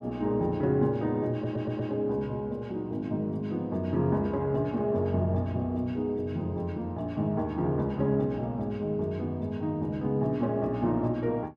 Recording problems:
audio stuttering; at 1.5 s

